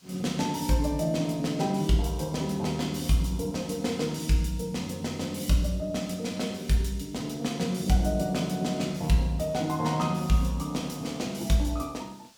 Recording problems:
hiss; SNR 27 dB

